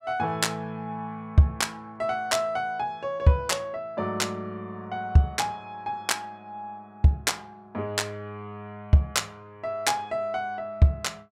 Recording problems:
none

